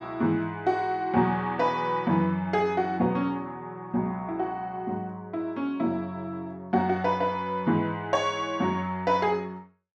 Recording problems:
none

